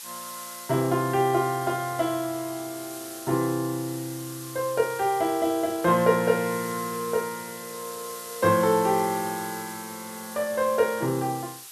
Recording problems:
background hiss; slope +3 dB per octave, SNR 13 dB

